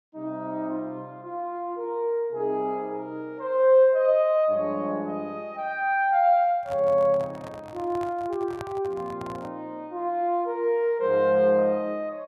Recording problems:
handling noise; from 6.5 to 9.5 s; peak -8 dB vs average level

